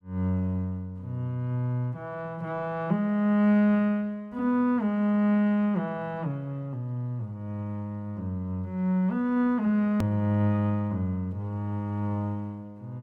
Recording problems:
edit click; at 10 s

